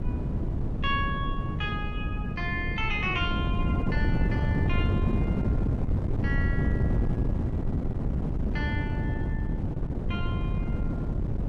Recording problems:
wind on the microphone; below 200 Hz, SNR -5 dB

